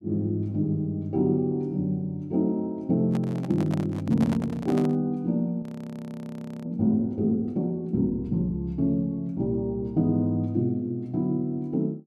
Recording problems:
handling noise; from 3 to 5 s; peak -5 dB vs average level
audio freezing; at 5.5 s for 1 s

